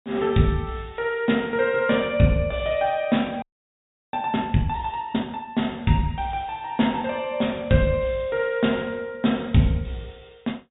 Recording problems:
low-pass filter; nothing above 4 kHz
audio freezing; at 3.5 s for 0.5 s

